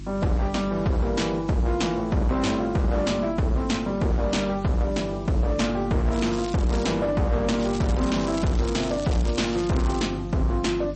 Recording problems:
lossy compression; MP3, log-spectral distance 3 dB, nothing above 8 kHz
distorted audio; hard clipping, signal-to-distortion ratio 8 dB
mains hum; 50 Hz, harmonics up to 350 Hz, SNR 12 dB
hiss; SNR 26 dB
crackle; at 6 s and from 7.5 to 10 s; loose cable, SNR 15 dB

